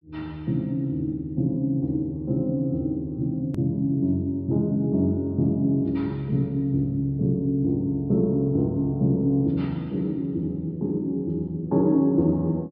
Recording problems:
treble missing; nothing above 5.5 kHz
hard cut with a click; at 3.5 s

